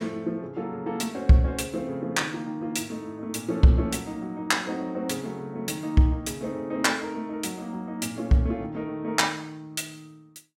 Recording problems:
none

